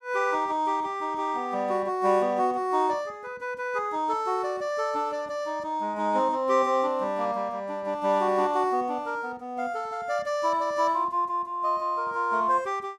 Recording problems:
none

